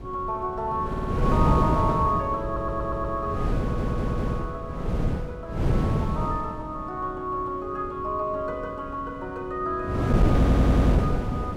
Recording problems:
wind on the microphone; below 270 Hz, SNR -4 dB
stutter; 4 times, first at 1 s

